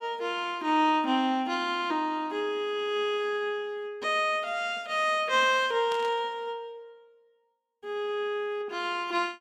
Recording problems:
burst of static; at 6 s; peak -9 dB vs average level

